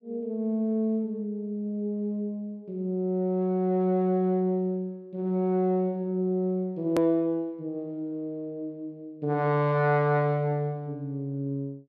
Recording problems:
click at an edit; at 7 s

